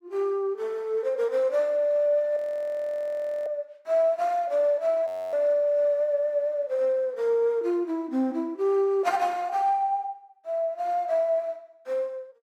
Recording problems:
frozen audio; at 2.5 s for 1 s and at 5 s

